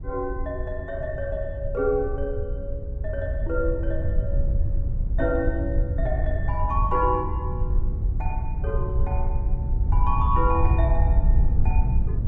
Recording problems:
wind on the microphone; below 76 Hz, SNR -3 dB

